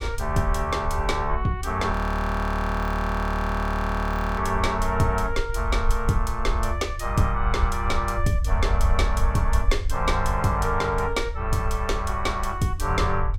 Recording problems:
low-frequency rumble; below 68 Hz, SNR 4 dB
audio freezing; at 2 s for 2.5 s

